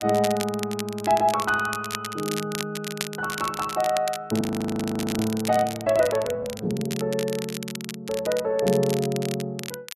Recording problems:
crackling; vinyl, SNR 10 dB
frozen audio; at 4.5 s for 1 s

